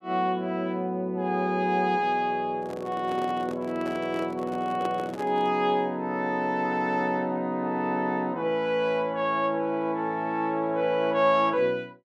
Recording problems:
handling noise; from 2.5 to 5.5 s; peak -4 dB vs average level

